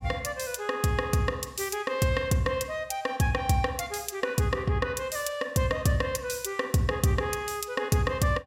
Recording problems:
none

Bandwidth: 16 kHz